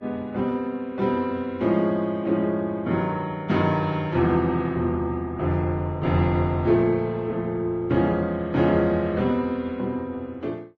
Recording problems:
lossy codec; Vorbis, log-spectral distance 2 dB

